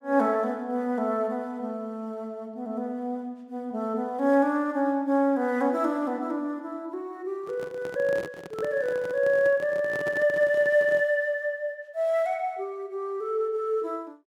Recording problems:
microphone handling noise; from 7.5 to 11 s; peak -6 dB vs average level

